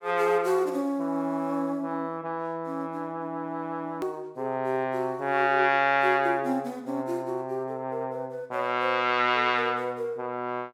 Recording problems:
hard cut with a click; at 4 s

